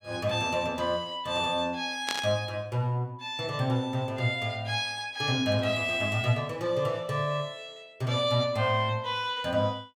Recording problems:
burst of static; at 2 s; peak +1 dB vs average level

